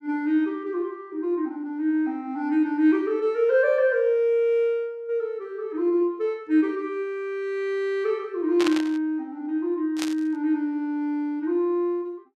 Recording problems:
static burst; at 8.5 s and at 10 s; peak +1 dB vs average level

